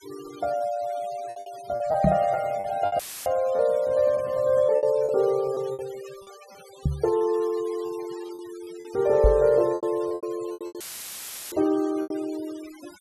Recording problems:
denoising artefacts; signal-to-artefact ratio 22 dB
packet loss; 10% of the sound replaced, filled with repeated pitch periods
microphone bump; at 2 s, at 7 s and at 9 s; peak +6 dB vs average level
dropout; at 3 s and at 11 s for 0.5 s; filled with static

